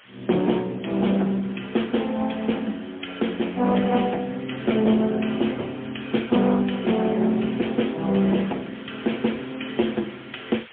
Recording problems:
telephone audio; 190 Hz to 3.4 kHz, AMR-NB, then MP3
distorted audio; hard clipping, uneven, signal-to-distortion ratio 14 dB
background hiss; SNR 23 dB

